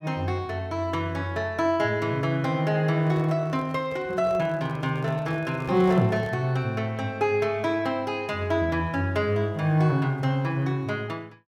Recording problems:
microphone handling noise; from 3 to 6.5 s; peak -9 dB vs average level

